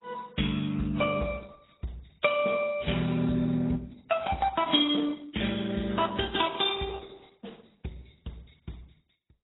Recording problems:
lossy codec; Opus, then AAC, log-spectral distance 6 dB, nothing above 3.3 kHz

